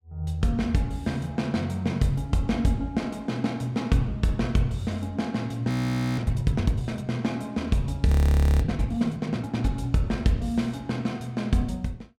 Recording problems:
frozen audio; at 5.5 s and at 8 s for 0.5 s

